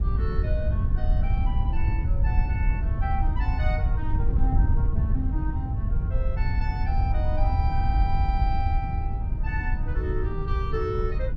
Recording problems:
wind noise; below 84 Hz, SNR -8 dB

